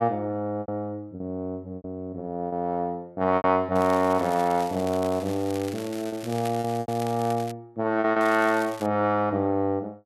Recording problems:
lost packets; 6% of the sound replaced, filled with repeated pitch periods
crackle; from 4 to 7.5 s and at 8 s; loose cable, SNR 17 dB

